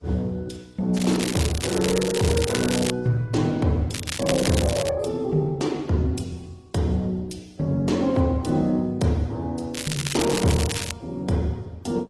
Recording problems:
lossy codec; Opus, then AAC, log-spectral distance 5 dB, nothing above 11.3 kHz
crackling; from 1 to 3 s, at 4 s and from 9.5 to 11 s; loose cable, SNR 6 dB

